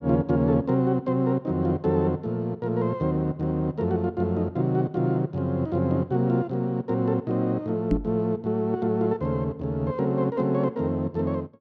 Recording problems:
microphone bump; at 8 s; peak +5 dB vs average level

